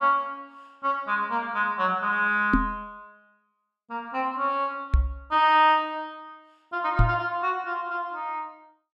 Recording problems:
microphone bump; at 2.5 s, at 5 s and at 7 s; peak +7 dB vs average level

